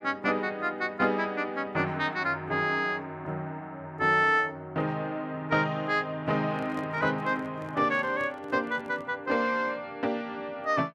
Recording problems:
handling noise; from 6.5 to 9 s; peak -9 dB vs average level

